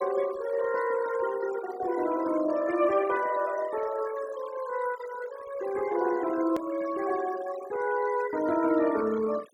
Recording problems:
denoising artefacts; signal-to-artefact ratio 15 dB
hard cut with a click; at 6.5 s

